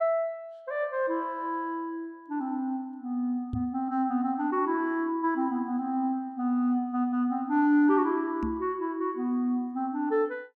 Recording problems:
microphone bump; at 3.5 s and at 8.5 s; peak -1 dB vs average level

